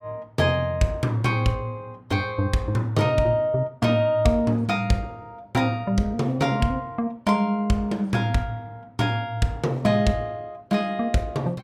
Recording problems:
none

